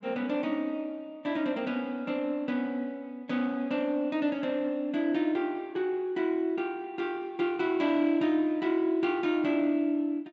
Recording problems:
treble missing; nothing above 8 kHz

